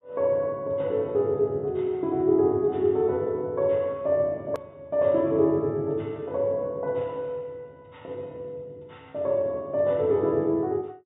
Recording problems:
treble cut off; nothing above 4 kHz
hard cut with a click; at 4.5 s

